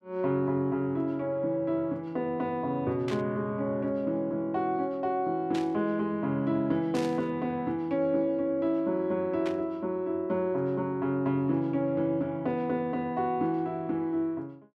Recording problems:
static burst; 4 times, first at 3 s; peak -7 dB vs average level

